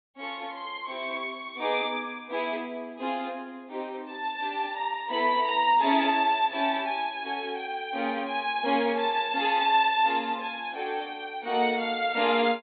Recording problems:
treble missing; nothing above 4.2 kHz

